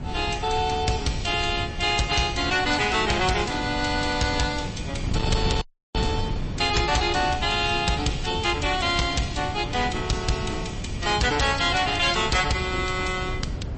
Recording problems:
lossy codec; MP3, log-spectral distance 5 dB, nothing above 8.2 kHz
distorted audio; hard clipping, uneven, signal-to-distortion ratio 11 dB
wind noise; below 200 Hz, SNR 8 dB
audio cutting out; at 5.5 s

